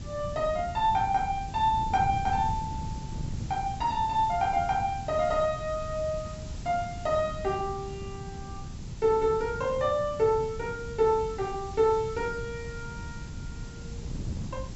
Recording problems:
treble missing; nothing above 7.7 kHz
hiss; SNR 22 dB
wind on the microphone; below 160 Hz, SNR 11 dB

